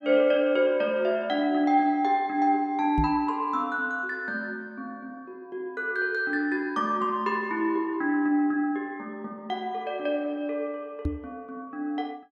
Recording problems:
knock on the microphone; at 3 s and at 11 s; peak +2 dB vs average level

